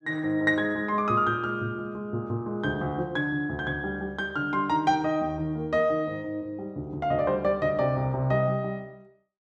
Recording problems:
none

